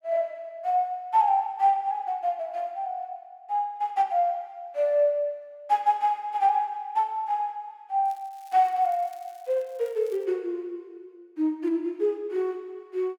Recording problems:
crackling; from 8 to 10 s; loose cable, SNR 30 dB

